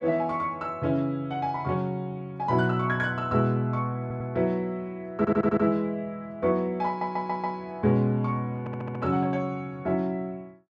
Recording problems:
audio stuttering; 4 times, first at 4 s

